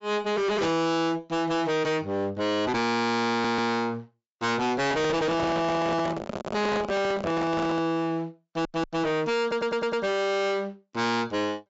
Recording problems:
treble cut off; nothing above 8 kHz
distorted audio; hard clipping, uneven, signal-to-distortion ratio 5 dB
audio stuttering; at 3.5 s, at 8.5 s and at 9.5 s
handling noise; from 5 to 8 s; peak 0 dB vs average level

